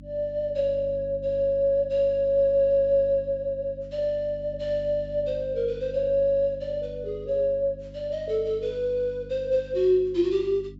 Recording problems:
treble cut off; nothing above 8 kHz
hum; 50 Hz, harmonics up to 300 Hz, SNR 18 dB

